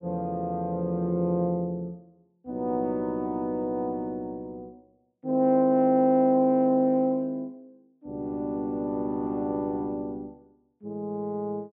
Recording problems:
low-pass filter; nothing above 4 kHz

